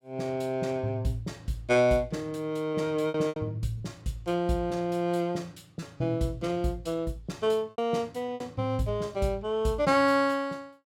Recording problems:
lost packets; 4% of the sound replaced, filled with repeated pitch periods

